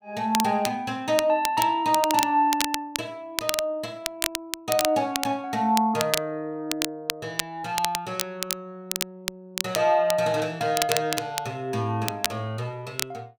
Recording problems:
crackle; vinyl, SNR 5 dB

